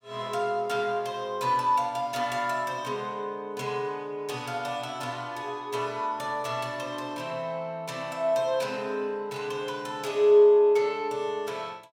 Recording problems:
none

